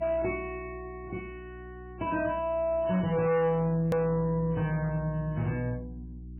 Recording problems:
lossy codec; MP3, log-spectral distance 2 dB, nothing above 17.7 kHz
distortion; hard clipping, signal-to-distortion ratio 11 dB
hum; 60 Hz, harmonics up to 360 Hz, SNR 15 dB
click at an edit; at 4 s

